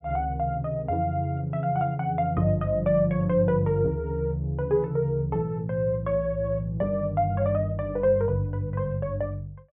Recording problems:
treble cut off; nothing above 3.6 kHz

